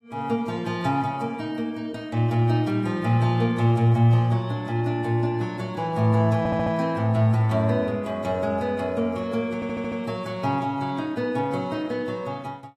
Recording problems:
codec artefacts; AAC, log-spectral distance 2 dB, nothing above 12.7 kHz
audio stuttering; at 6.5 s and at 9.5 s

